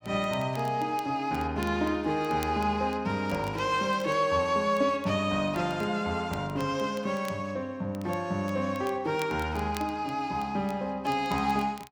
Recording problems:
crackling; vinyl, SNR 22 dB

